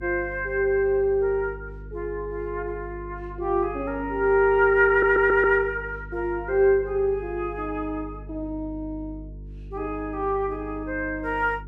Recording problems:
electrical hum; 50 Hz, harmonics up to 450 Hz, SNR 16 dB
audio stuttering; at 5 s

